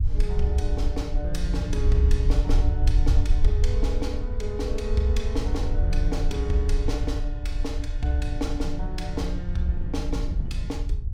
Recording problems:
low-frequency rumble; below 64 Hz, SNR -3 dB
wind on the microphone; below 140 Hz, SNR 11 dB

